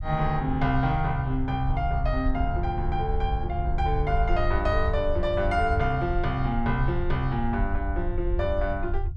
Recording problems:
rumble; below 72 Hz, SNR 4 dB

